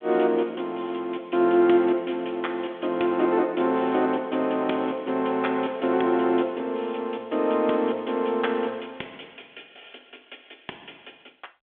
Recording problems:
phone line; 240 Hz to 3.5 kHz, G.726

